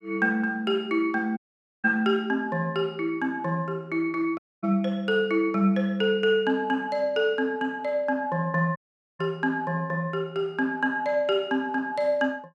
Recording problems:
dropout; at 1.5 s, at 4.5 s and at 9 s

